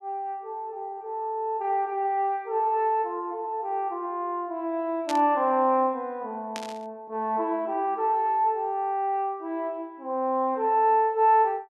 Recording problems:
static burst; at 5 s and at 6.5 s; peak -5 dB vs average level

